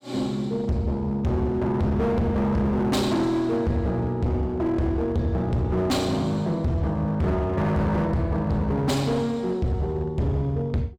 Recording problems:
distorted audio; hard clipping, uneven, signal-to-distortion ratio 6 dB

